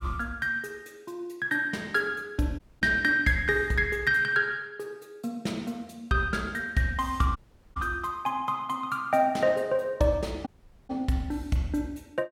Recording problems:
audio cutting out; at 2.5 s, at 7.5 s and at 10 s

